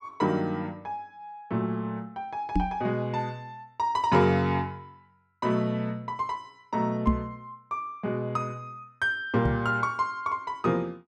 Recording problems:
microphone bump; at 2.5 s, at 7 s and at 9.5 s; peak +8 dB vs average level

